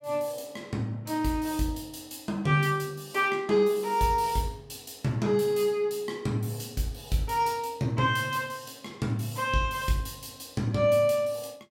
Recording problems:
none

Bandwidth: 16 kHz